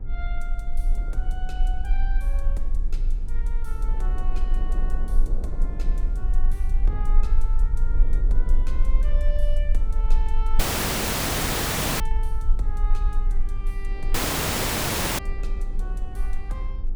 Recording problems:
electrical hum; 50 Hz, harmonics up to 1.3 kHz, SNR 8 dB
rumble; below 38 Hz, strongest tone 18 Hz, SNR -14 dB
wind on the microphone; below 380 Hz, SNR 3 dB
dropout; at 11 s for 1.5 s and at 14 s for 1 s

